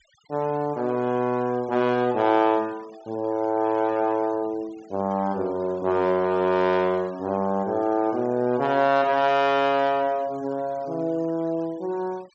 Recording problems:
treble cut off; nothing above 8 kHz
denoising artefacts; signal-to-artefact ratio 25 dB

